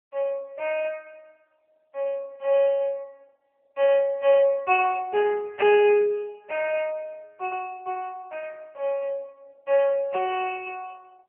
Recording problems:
telephone audio; 340 Hz to 3.1 kHz, AMR-NB

